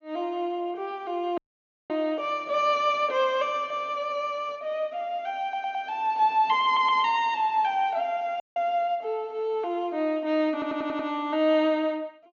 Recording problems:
treble missing; nothing above 6.9 kHz
dropout; at 1.5 s for 0.5 s and at 8.5 s
audio stuttering; at 5.5 s, at 6.5 s and at 11 s

